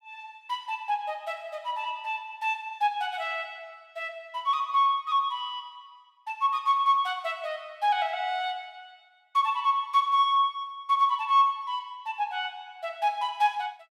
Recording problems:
none

